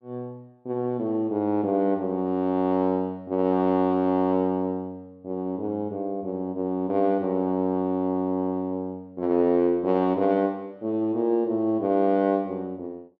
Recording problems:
none

